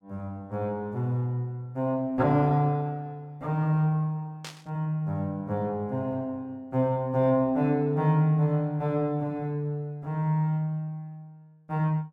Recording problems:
static burst; at 4.5 s; peak -8 dB vs average level

